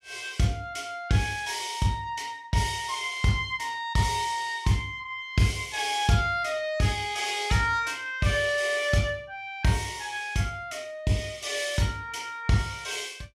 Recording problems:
none

